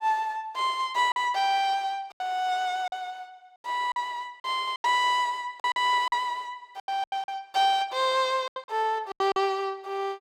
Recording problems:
lost packets; 9% of the sound replaced, filled with silence

